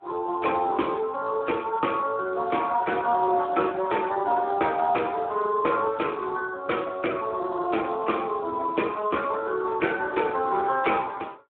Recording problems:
telephone audio; 240 Hz to 3.4 kHz, Speex

